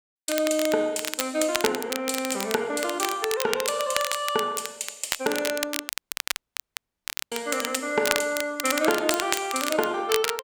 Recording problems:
crackle; vinyl, SNR 5 dB
audio cutting out; at 6 s for 1.5 s

